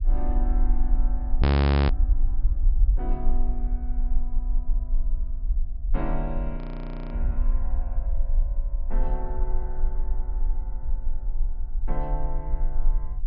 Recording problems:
treble cut off; nothing above 5.5 kHz
low-frequency rumble; below 46 Hz, SNR -11 dB
audio freezing; at 1.5 s and at 6.5 s for 0.5 s

